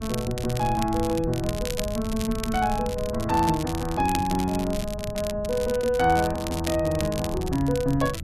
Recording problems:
low-frequency rumble; below 130 Hz, SNR 11 dB
crackling; vinyl, SNR 12 dB

